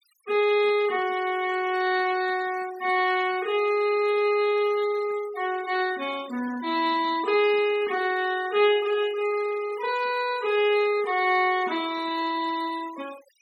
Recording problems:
noise reduction artefacts; signal-to-artefact ratio 18 dB

